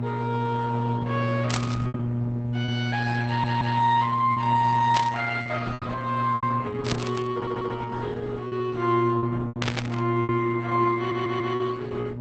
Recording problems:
lossy compression; Opus, log-spectral distance 4 dB, nothing above 8 kHz
hum; 60 Hz, harmonics up to 840 Hz, SNR 4 dB
packet loss; 6% of the sound replaced, filled with repeated pitch periods
static burst; 4 times, first at 1.5 s; peak +3 dB vs average level
audio stuttering; at 3.5 s, at 7.5 s and at 11 s

